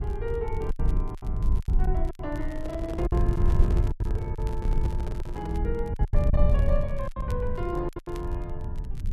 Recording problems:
rumble; below 74 Hz, SNR -6 dB
crackle; vinyl, SNR 22 dB
packet loss; 11% of the sound replaced, filled with silence
handling noise; from 2.5 to 5.5 s; peak 0 dB vs average level

